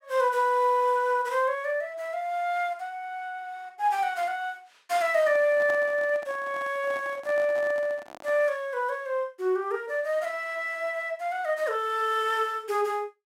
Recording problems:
microphone handling noise; from 5 to 8.5 s; peak -7 dB vs average level

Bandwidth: 16 kHz